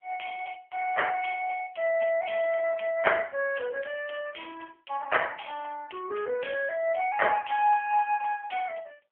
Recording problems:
telephone audio; 340 Hz to 3.1 kHz, AMR-NB

